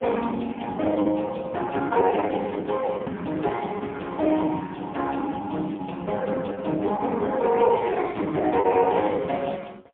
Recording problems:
phone line; 150 Hz to 3.5 kHz, AMR-NB, then MP3
lost packets; 11% of the sound replaced, filled with the last packet

